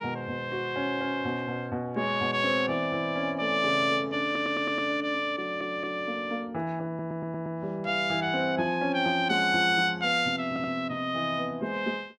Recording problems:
audio stuttering; 4 times, first at 4.5 s

